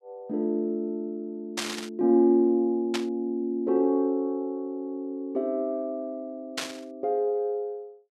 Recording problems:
burst of static; at 1.5 s, at 3 s and at 6.5 s; peak +2 dB vs average level

